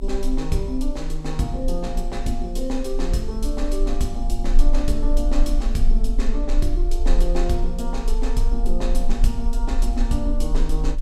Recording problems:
rumble; below 34 Hz, strongest tone 24 Hz, SNR -1 dB

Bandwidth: 16 kHz